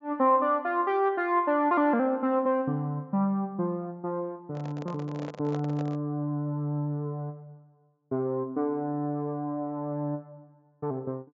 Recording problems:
treble cut off; nothing above 7.5 kHz
microphone handling noise; from 4.5 to 6 s; peak -7 dB vs average level

